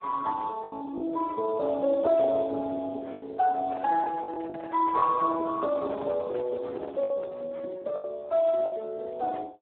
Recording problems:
telephone audio; 300 Hz to 2 kHz, Speex
lost packets; 6% of the sound replaced, filled with the last packet
microphone handling noise; from 3.5 to 7.5 s; peak -9 dB vs average level

